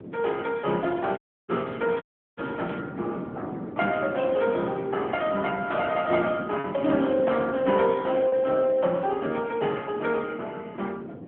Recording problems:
phone line; 130 Hz to 3.5 kHz, AMR-NB
wind on the microphone; below 420 Hz, SNR 12 dB
lost packets; 1.5% of the sound replaced, filled with repeated pitch periods
crackle; from 1 to 3 s; loose cable, SNR 24 dB
dropout; at 1 s and at 2 s

